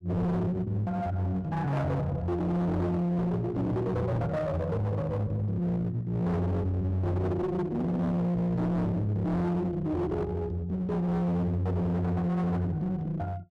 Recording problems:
distortion; hard clipping, uneven, signal-to-distortion ratio 5 dB

